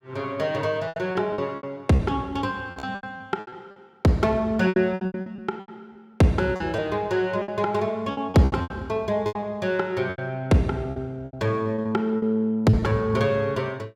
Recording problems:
packet loss; 14% of the sound replaced, filled with repeated pitch periods

